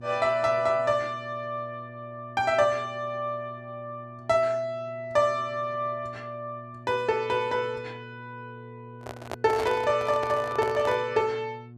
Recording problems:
hum; 60 Hz, harmonics up to 720 Hz, SNR 19 dB
microphone handling noise; from 9 to 11 s; peak -2 dB vs average level

